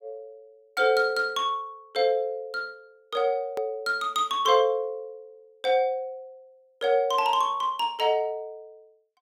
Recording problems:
click at an edit; at 3.5 s

